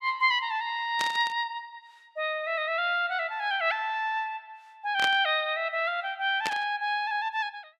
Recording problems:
static burst; at 1 s, at 5 s and at 6.5 s; peak +1 dB vs average level

